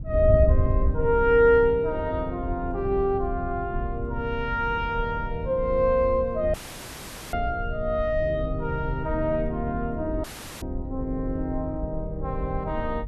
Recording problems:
wind on the microphone; below 84 Hz, SNR 7 dB
audio cutting out; at 6.5 s for 1 s and at 10 s; filled with static

